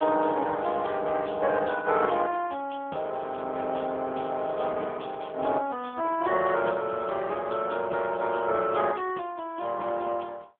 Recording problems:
telephone audio; 220 Hz to 3.4 kHz, AMR-NB

